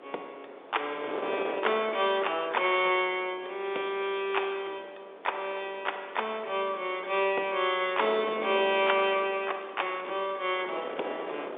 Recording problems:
phone line; 320 Hz to 3.6 kHz, G.711
wind on the microphone; below 890 Hz, SNR 13 dB
crackling; from 6 to 8 s and from 8.5 to 11 s; loose cable, SNR 28 dB

